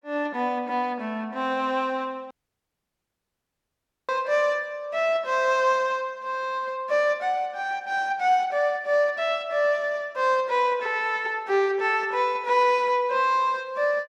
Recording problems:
dropout; at 2.5 s for 2 s

